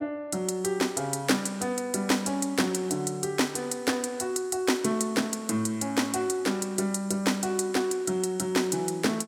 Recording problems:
none

